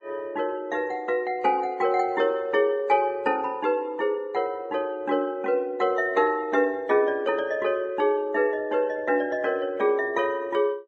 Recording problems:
codec artefacts; MP3, then Vorbis, log-spectral distance 2 dB, nothing above 6.9 kHz

